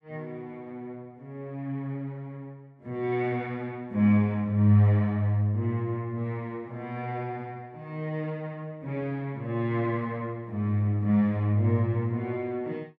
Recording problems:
none

